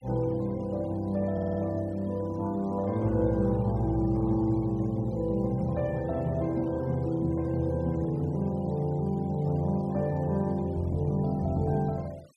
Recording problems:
denoising artefacts; signal-to-artefact ratio 28 dB
stutter; at 1.5 s

